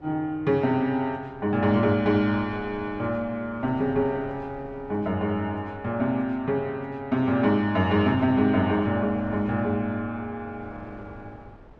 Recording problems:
wind noise; below 600 Hz, SNR 22 dB

